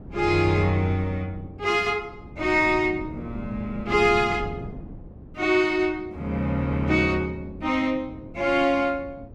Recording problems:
wind noise; below 250 Hz, SNR 15 dB

